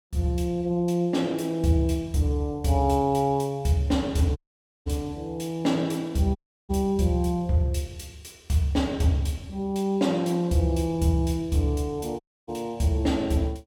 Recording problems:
dropout; at 4.5 s, at 6.5 s and at 12 s

